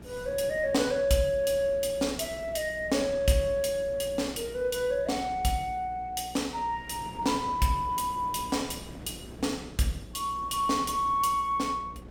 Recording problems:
electrical hum; 60 Hz, harmonics up to 540 Hz, SNR 20 dB
wind noise; below 530 Hz, SNR 19 dB

